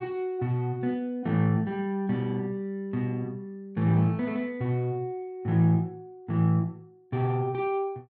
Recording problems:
none

